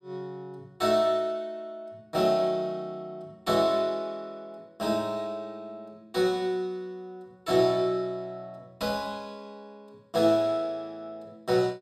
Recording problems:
none

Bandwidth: 15.5 kHz